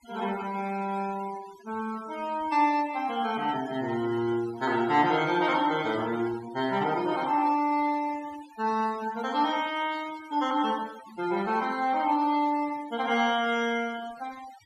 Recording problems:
denoising artefacts; signal-to-artefact ratio 18 dB

